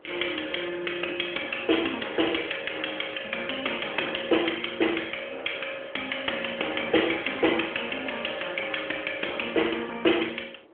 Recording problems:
phone line; 280 Hz to 3.4 kHz, AMR-NB
wind on the microphone; below 770 Hz, SNR 21 dB

